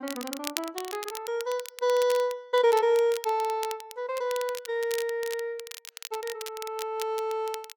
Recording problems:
crackle; vinyl, SNR 12 dB

